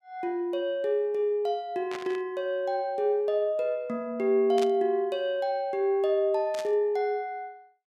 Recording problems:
burst of static; at 2 s, at 4.5 s and at 6.5 s; peak -6 dB vs average level

